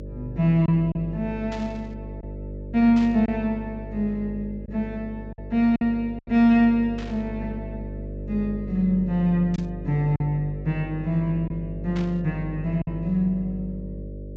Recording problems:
low-pass filter; nothing above 8 kHz
hum; 50 Hz, harmonics up to 600 Hz, SNR 12 dB
lost packets; 3% of the sound replaced, filled with silence
burst of static; 5 times, first at 1.5 s; peak -12 dB vs average level

